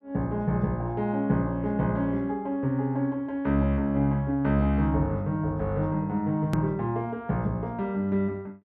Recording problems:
click at an edit; at 6.5 s

